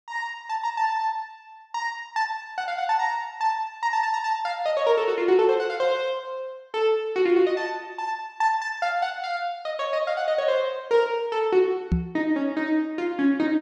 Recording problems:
microphone bump; at 12 s; peak +5 dB vs average level

